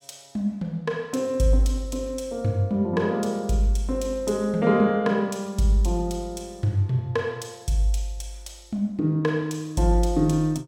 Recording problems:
none

